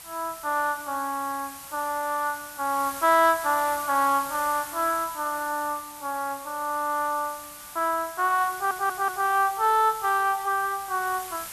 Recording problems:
hiss; SNR 13 dB
audio stuttering; at 8.5 s

